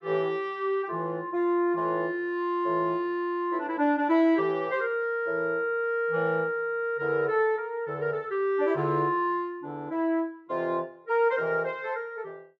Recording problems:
none

